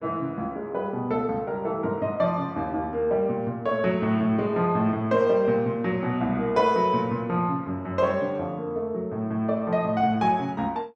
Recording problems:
none

